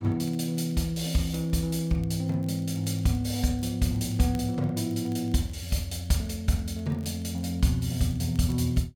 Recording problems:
crackling; vinyl, SNR 29 dB

